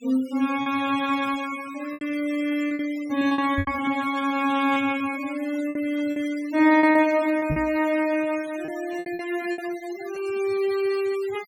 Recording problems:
denoising artefacts; signal-to-artefact ratio 18 dB
lost packets; 8% of the sound replaced, filled with repeated pitch periods
knock on the microphone; at 3.5 s and at 7.5 s; peak +1 dB vs average level

